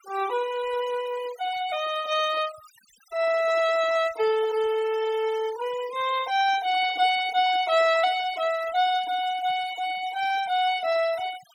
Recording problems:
noise reduction artefacts; signal-to-artefact ratio 17 dB

